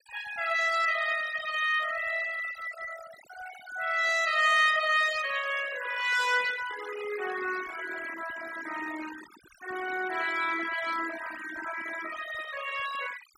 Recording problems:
noise reduction artefacts; signal-to-artefact ratio 13 dB

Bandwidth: 16.5 kHz